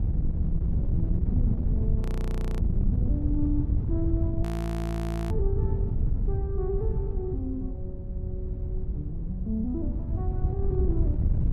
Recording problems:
wind noise; below 110 Hz, SNR -7 dB
audio freezing; at 2 s for 0.5 s and at 4.5 s for 1 s

